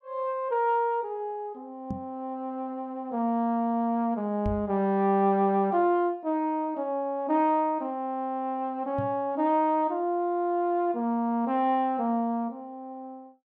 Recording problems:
microphone thump; at 2 s, at 4.5 s and at 9 s; peak -2 dB vs average level

